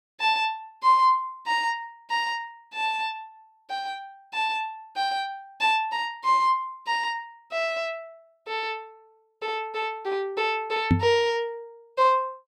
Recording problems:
knock on the microphone; at 11 s; peak +9 dB vs average level

